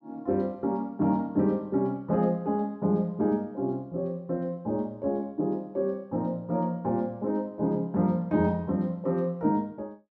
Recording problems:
none

